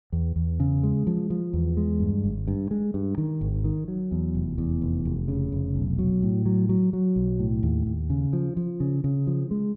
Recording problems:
none

